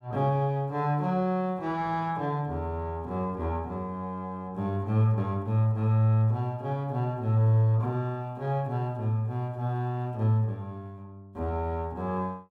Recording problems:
none

